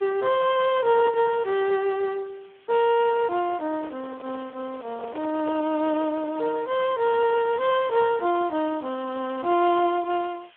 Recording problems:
telephone audio; 280 Hz to 3.2 kHz, Speex
hiss; SNR 29 dB
handling noise; from 3.5 to 7 s; peak -6 dB vs average level

